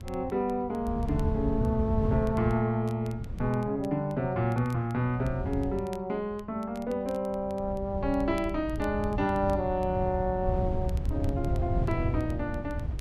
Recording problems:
wind noise; below 120 Hz, SNR 4 dB
crackling; vinyl, SNR 27 dB

